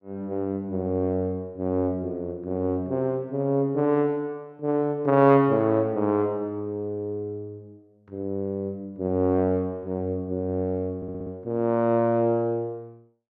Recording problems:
stutter; at 11 s

